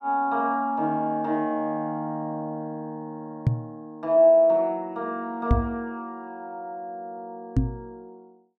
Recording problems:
microphone bump; at 3.5 s, at 5.5 s and at 7.5 s; peak +8 dB vs average level

